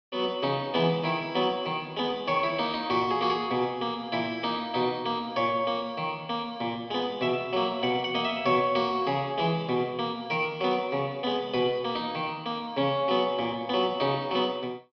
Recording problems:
treble cut off; nothing above 5.5 kHz

